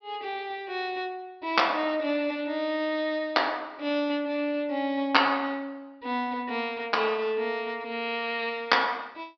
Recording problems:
treble cut off; nothing above 5.5 kHz

